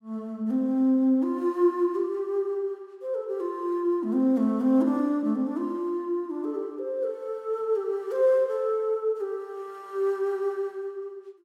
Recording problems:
none

